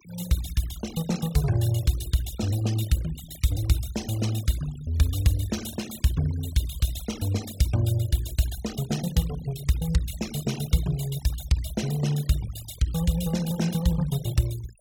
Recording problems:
noise reduction artefacts; signal-to-artefact ratio 16 dB

